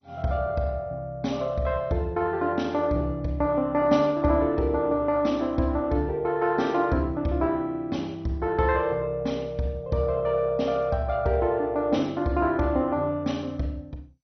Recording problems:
codec artefacts; MP2, log-spectral distance 2 dB, nothing above 6 kHz

